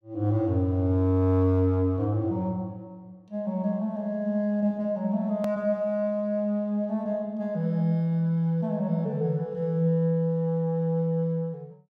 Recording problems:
edit click; at 5.5 s

